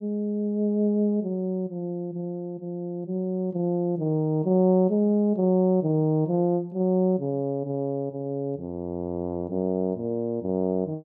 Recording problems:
none

